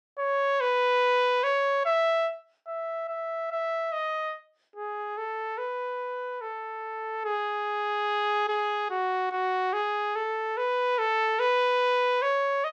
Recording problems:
none

